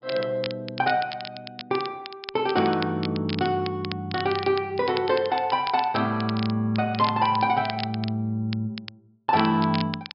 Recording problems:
low-pass filter; nothing above 5.5 kHz
crackling; vinyl, SNR 13 dB

